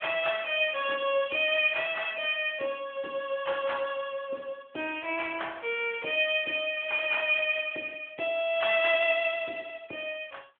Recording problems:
telephone audio; 260 Hz to 3.4 kHz, AMR-NB

